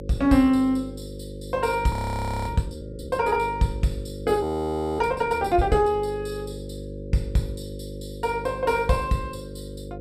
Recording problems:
hum; 50 Hz, harmonics up to 550 Hz, SNR 12 dB
audio freezing; at 2 s for 0.5 s and at 4.5 s for 0.5 s

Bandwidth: 15 kHz